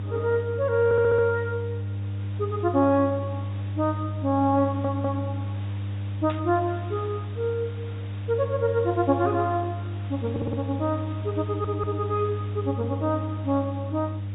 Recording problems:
treble missing; nothing above 4 kHz
hum; 50 Hz, harmonics up to 300 Hz, SNR 5 dB
hiss; SNR 22 dB
stutter; 4 times, first at 1 s
static burst; at 6.5 s; peak -9 dB vs average level

